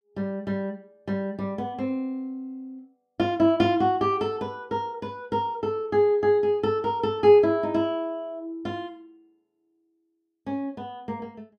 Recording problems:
none

